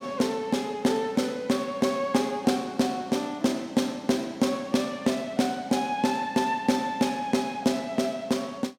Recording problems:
none

